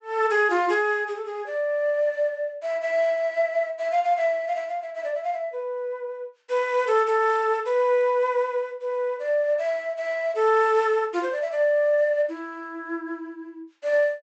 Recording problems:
treble missing; nothing above 8 kHz

